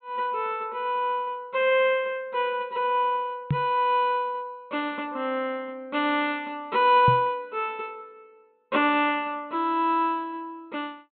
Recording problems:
treble cut off; nothing above 4 kHz
knock on the microphone; at 3.5 s and at 7 s; peak +4 dB vs average level

